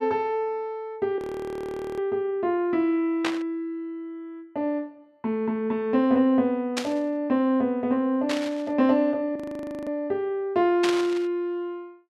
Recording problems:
audio freezing; at 1 s for 1 s and at 9.5 s for 0.5 s
burst of static; 4 times, first at 3 s; peak +2 dB vs average level

